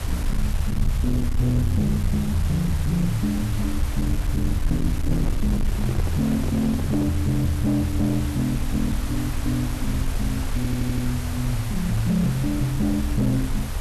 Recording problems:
distorted audio; soft clipping, signal-to-distortion ratio 11 dB
background hiss; slope -4 dB per octave, SNR 9 dB
low-frequency rumble; below 86 Hz, SNR 5 dB
microphone handling noise; from 5 to 7 s; peak -2 dB vs average level
stutter; at 11 s

